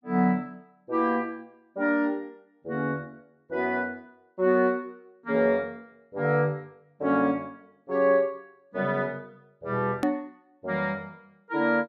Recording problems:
hard cut with a click; at 10 s

